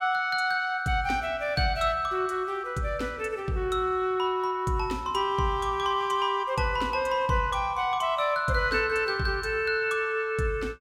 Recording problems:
none

